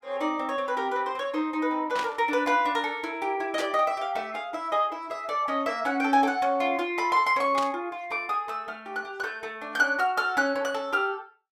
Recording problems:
burst of static; at 2 s, at 3.5 s and at 7.5 s; peak -3 dB vs average level

